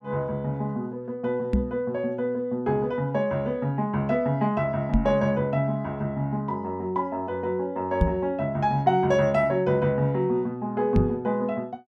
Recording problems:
knock on the microphone; 4 times, first at 1.5 s; peak +7 dB vs average level

